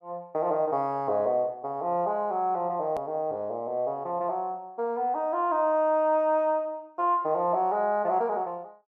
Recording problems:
edit click; at 3 s

